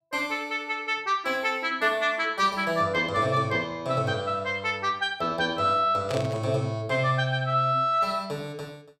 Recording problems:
burst of static; at 6 s; peak -7 dB vs average level

